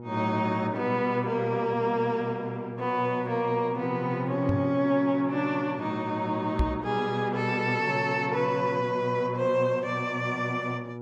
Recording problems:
electrical hum; 60 Hz, harmonics up to 960 Hz, SNR 13 dB
knock on the microphone; at 4.5 s and at 6.5 s; peak +5 dB vs average level

